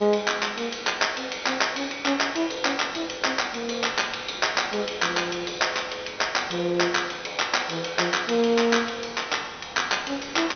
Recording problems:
low-pass filter; nothing above 6.1 kHz
background hiss; slope -3 dB per octave, SNR 22 dB

